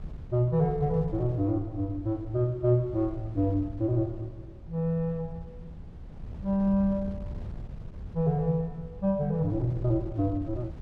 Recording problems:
wind on the microphone; below 120 Hz, SNR 14 dB

